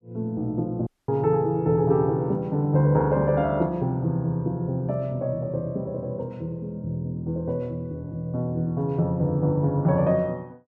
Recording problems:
dropout; at 1 s

